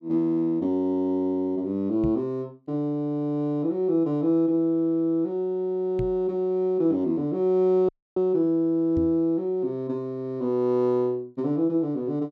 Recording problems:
knock on the microphone; at 2 s, at 6 s and at 9 s; peak -2 dB vs average level
audio cutting out; at 8 s

